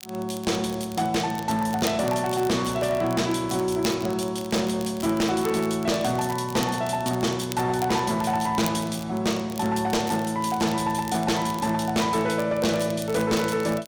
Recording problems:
distorted audio; hard clipping, signal-to-distortion ratio 11 dB
crackle; vinyl, SNR 17 dB

